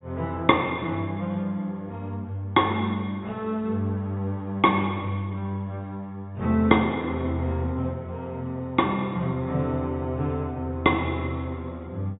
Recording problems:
treble missing; nothing above 4 kHz

